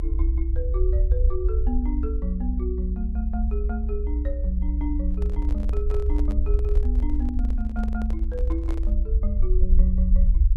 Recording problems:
low-frequency rumble; below 60 Hz, SNR -8 dB
handling noise; from 5 to 9 s; peak -3 dB vs average level

